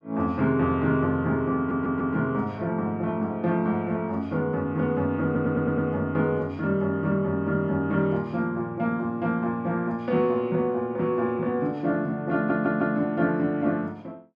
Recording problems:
audio stuttering; at 1.5 s, at 5.5 s and at 12 s

